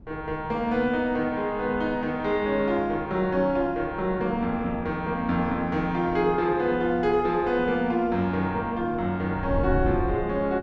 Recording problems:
wind on the microphone; below 150 Hz, SNR 13 dB

